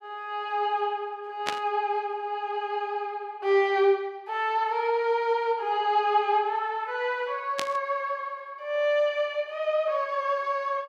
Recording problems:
static burst; at 1.5 s and at 7.5 s; peak +1 dB vs average level

